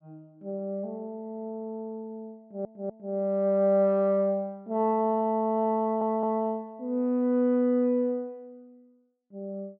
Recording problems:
stutter; at 2.5 s and at 6 s

